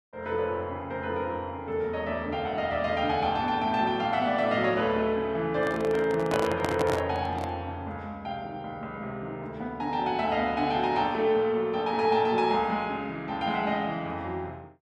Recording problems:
microphone handling noise; from 5.5 to 7.5 s; peak +2 dB vs average level

